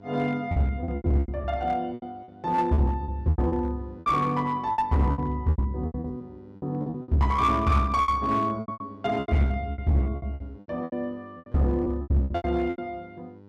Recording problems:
distorted audio; hard clipping, uneven, signal-to-distortion ratio 10 dB
hum; 50 Hz, harmonics up to 1.1 kHz, SNR 23 dB
packet loss; 18% of the sound replaced, filled with repeated pitch periods

